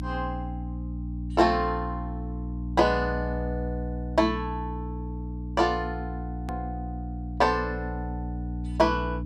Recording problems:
hum; 60 Hz, harmonics up to 300 Hz, SNR 6 dB
click at an edit; at 6.5 s

